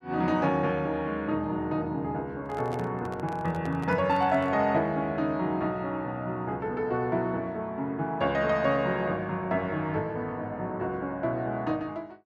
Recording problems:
microphone handling noise; from 2.5 to 4.5 s; peak -7 dB vs average level

